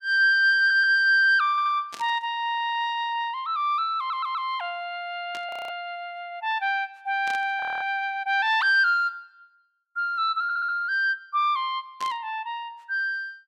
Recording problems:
stutter; 4 times, first at 0.5 s
static burst; 4 times, first at 2 s; peak -10 dB vs average level
audio freezing; at 5.5 s and at 7.5 s

